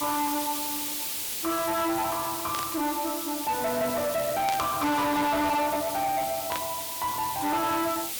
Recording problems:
distortion; soft clipping, signal-to-distortion ratio 8 dB
hiss; SNR 4 dB
static burst; at 2.5 s, at 4.5 s and at 6.5 s; peak -2 dB vs average level

